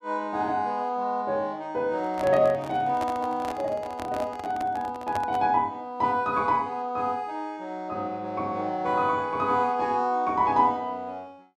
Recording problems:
handling noise; from 2 to 5.5 s; peak -3 dB vs average level

